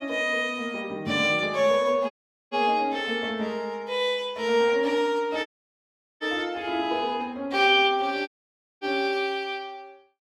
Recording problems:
dropout; at 2 s, at 5.5 s for 0.5 s and at 8.5 s for 0.5 s

